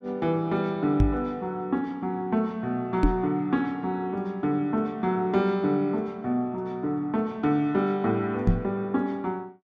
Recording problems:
microphone thump; at 1 s, at 3 s and at 8.5 s; peak +9 dB vs average level

